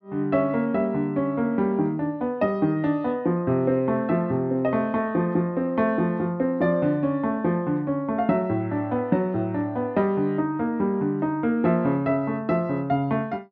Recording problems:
none

